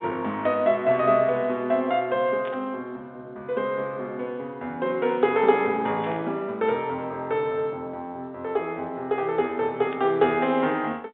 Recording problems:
telephone audio; 190 Hz to 3.8 kHz, G.711
burst of static; at 2.5 s, at 6 s and at 10 s; peak -13 dB vs average level

